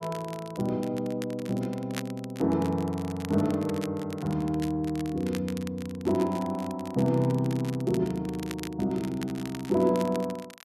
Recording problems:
crackling; vinyl, SNR 17 dB

